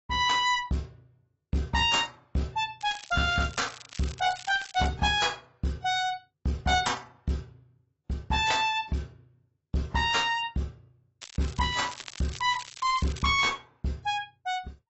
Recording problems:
lossy compression; AAC, log-spectral distance 6 dB, nothing above 7.6 kHz
distorted audio; hard clipping, uneven, signal-to-distortion ratio 9 dB
crackling; from 3 to 5 s and from 11 to 14 s; loose cable, SNR 15 dB

